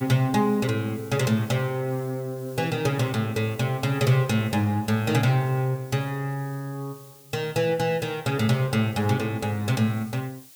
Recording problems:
background hiss; slope +1 dB per octave, SNR 23 dB

